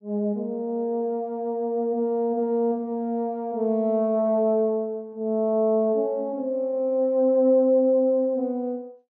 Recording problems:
none

